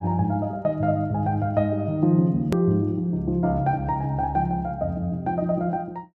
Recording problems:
hard cut with a click; at 2.5 s

